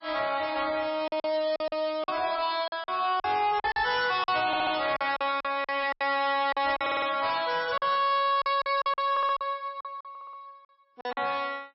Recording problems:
lossy codec; MP3, log-spectral distance 4 dB, nothing above 4.5 kHz
distorted audio; soft clipping, signal-to-distortion ratio 12 dB
lost packets; 11% of the sound replaced, filled with silence
stutter; 4 times, first at 4.5 s

